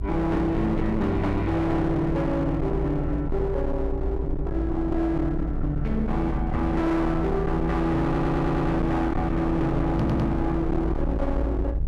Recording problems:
distortion; hard clipping, signal-to-distortion ratio 8 dB
low-frequency rumble; below 120 Hz, SNR 5 dB
stutter; at 8 s and at 10 s
knock on the microphone; at 10 s; peak +3 dB vs average level

